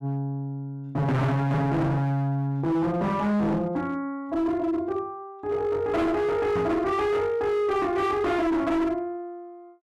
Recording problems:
distorted audio; hard clipping, signal-to-distortion ratio 7 dB
microphone bump; at 6.5 s; peak 0 dB vs average level

